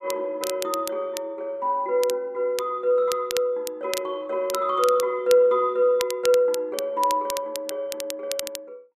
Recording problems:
crackle; vinyl, SNR 12 dB

